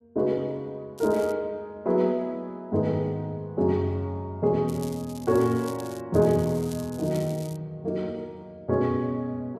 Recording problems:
crackle; at 1 s, from 4.5 to 6 s and from 6 to 7.5 s; loose cable, SNR 19 dB

